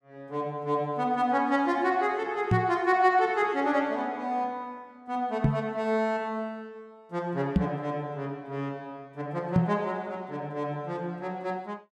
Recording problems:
microphone thump; 4 times, first at 2.5 s; peak +9 dB vs average level

